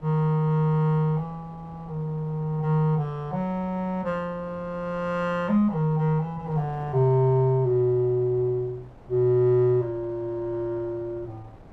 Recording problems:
wind on the microphone; below 610 Hz, SNR 24 dB

